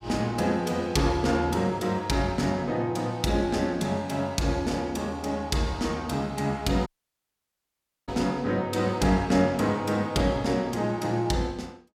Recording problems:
dropout; at 7 s for 1 s

